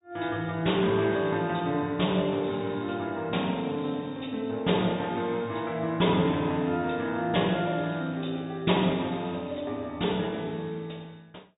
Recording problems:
treble missing; nothing above 4 kHz

